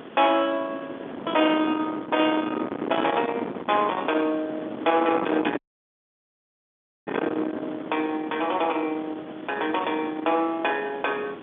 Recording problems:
phone line; 170 Hz to 3.5 kHz, G.711
distortion; soft clipping, signal-to-distortion ratio 11 dB
background hiss; SNR 24 dB
wind noise; below 970 Hz, SNR 8 dB
dropout; at 5.5 s for 1.5 s

